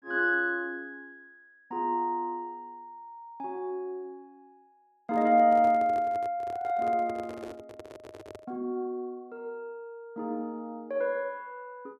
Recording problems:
microphone handling noise; from 5 to 8.5 s; peak -9 dB vs average level

